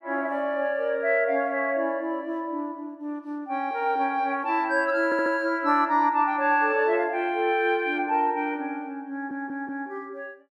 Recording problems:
audio stuttering; at 5 s and at 9 s

